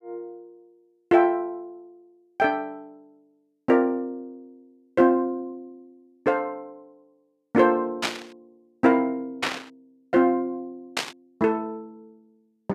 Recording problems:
burst of static; at 8 s, at 9.5 s and at 11 s; peak +3 dB vs average level

